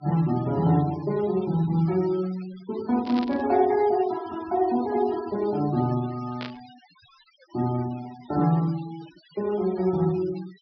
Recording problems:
low-pass filter; nothing above 5.5 kHz
noise reduction artefacts; signal-to-artefact ratio 21 dB
burst of static; at 3 s and at 6.5 s; peak -7 dB vs average level

